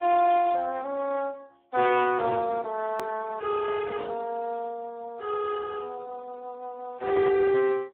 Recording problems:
telephone audio; 260 Hz to 2.9 kHz, Speex
hard cut with a click; at 3 s

